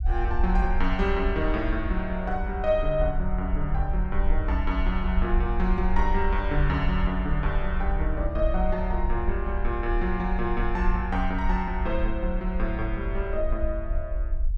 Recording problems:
rumble; below 56 Hz, SNR 1 dB

